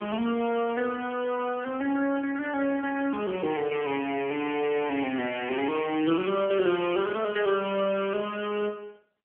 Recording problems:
phone line; 260 Hz to 3.2 kHz, AMR-NB

